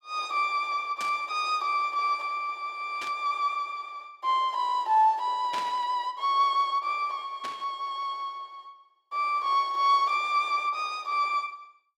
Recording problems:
static burst; 4 times, first at 1 s; peak -5 dB vs average level

